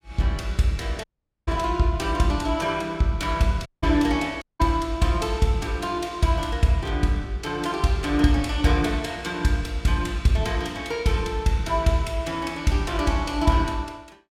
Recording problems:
audio cutting out; at 1 s, at 3.5 s and at 4.5 s

